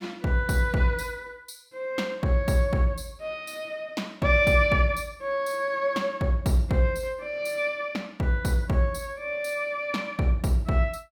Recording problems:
none

